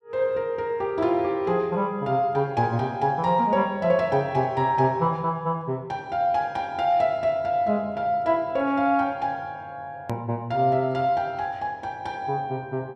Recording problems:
click at an edit; at 10 s

